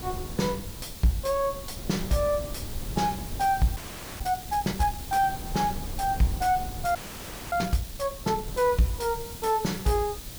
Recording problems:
distorted audio; soft clipping, signal-to-distortion ratio 11 dB
background hiss; slope +2 dB per octave, SNR 13 dB
wind noise; below 170 Hz, SNR 13 dB
audio freezing; at 4 s and at 7 s for 0.5 s

